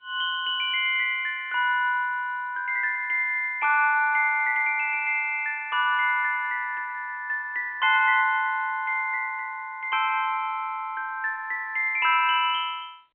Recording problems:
phone line; 240 Hz to 3.4 kHz, G.711

